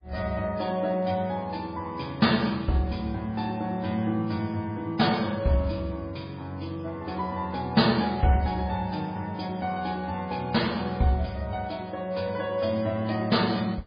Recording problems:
lossy compression; MP3, log-spectral distance 5 dB, nothing above 4.8 kHz

